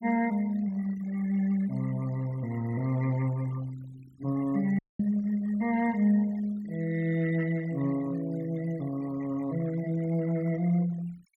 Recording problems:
denoising artefacts; signal-to-artefact ratio 19 dB
dropout; at 5 s

